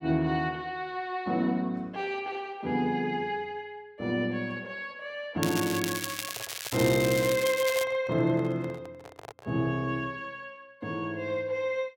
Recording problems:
crackling; from 5.5 to 8 s; loose cable, SNR 5 dB
microphone handling noise; from 6 to 9.5 s; peak -10 dB vs average level

